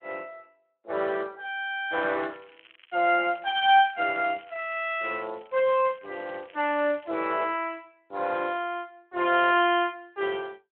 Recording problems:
phone line; 240 Hz to 3.3 kHz, Speex
crackling; from 2 to 7.5 s; loose cable, SNR 27 dB

